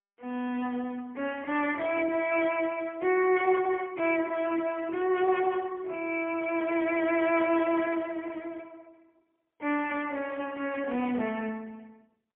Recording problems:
telephone audio; 260 Hz to 3.2 kHz, AMR-NB, then MP3

